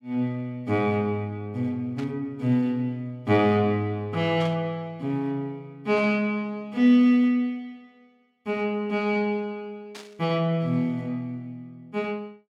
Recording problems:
burst of static; 4 times, first at 2 s; peak -11 dB vs average level

